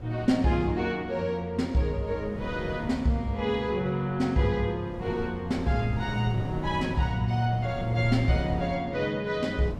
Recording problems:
wind on the microphone; below 300 Hz, SNR 12 dB

